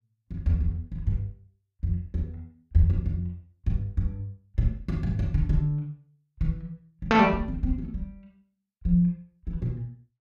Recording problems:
none

